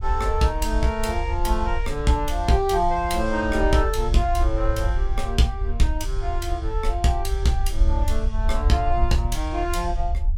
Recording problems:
rumble; below 60 Hz, SNR 3 dB

